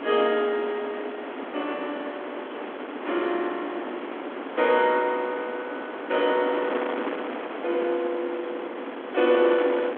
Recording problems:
phone line; 240 Hz to 3.5 kHz, G.726
wind noise; below 1.3 kHz, SNR 8 dB

